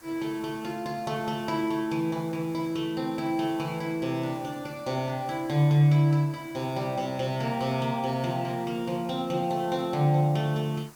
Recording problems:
background hiss; SNR 24 dB

